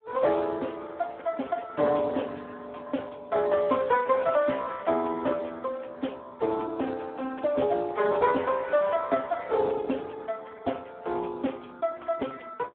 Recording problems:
telephone audio; 260 Hz to 3.4 kHz, Speex

